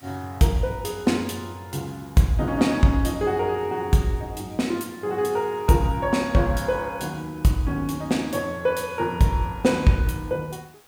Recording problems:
hiss; SNR 28 dB

